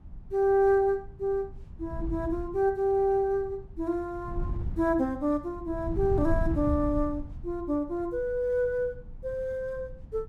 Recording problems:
wind on the microphone; below 100 Hz, SNR 11 dB

